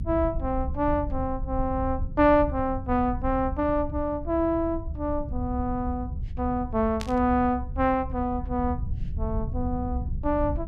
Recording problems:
low-frequency rumble; below 92 Hz, SNR 7 dB
static burst; at 7 s; peak -5 dB vs average level

